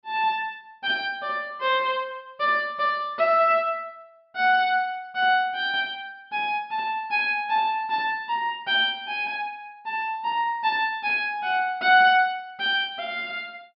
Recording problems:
low-pass filter; nothing above 5.3 kHz

